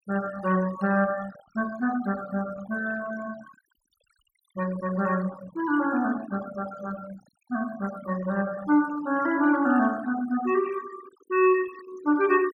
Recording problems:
noise reduction artefacts; signal-to-artefact ratio 16 dB

